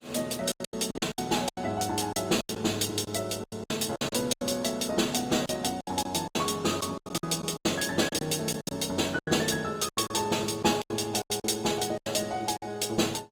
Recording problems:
lossy codec; Opus, log-spectral distance 5 dB, nothing above 19 kHz
packet loss; 14% of the sound replaced, filled with silence

